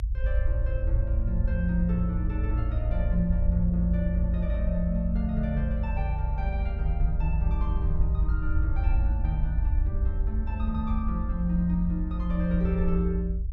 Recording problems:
low-frequency rumble; below 74 Hz, SNR -3 dB

